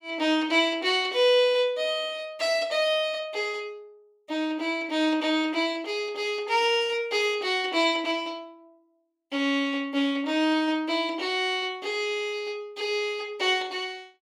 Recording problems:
none

